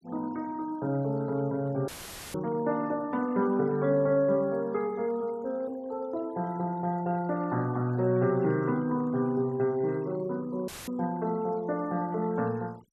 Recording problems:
denoising artefacts; signal-to-artefact ratio 26 dB
dropout; at 2 s and at 11 s; filled with static
knock on the microphone; at 2.5 s; peak -31 dB vs average level

